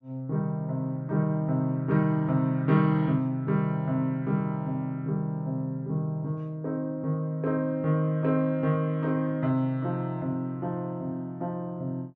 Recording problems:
treble cut off; nothing above 7.7 kHz

